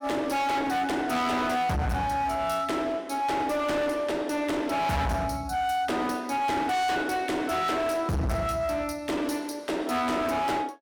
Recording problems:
distorted audio; hard clipping, signal-to-distortion ratio 6 dB

